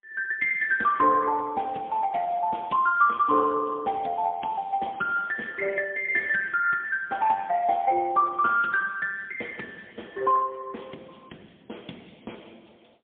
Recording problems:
telephone audio; 240 Hz to 3.4 kHz, AMR-NB, then MP3

